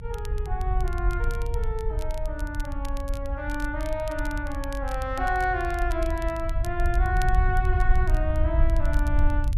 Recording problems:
low-frequency rumble; below 64 Hz, SNR -2 dB
crackle; vinyl, SNR 18 dB

